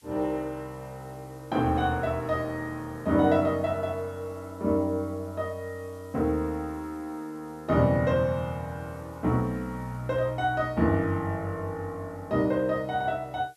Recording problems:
background hiss; slope +3 dB per octave, SNR 30 dB

